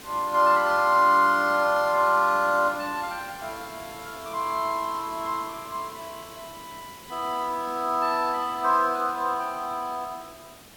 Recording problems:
background hiss; slope -3 dB per octave, SNR 20 dB

